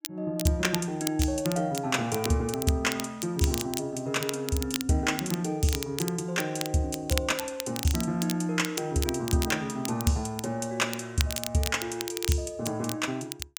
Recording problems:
crackle; vinyl, SNR 8 dB

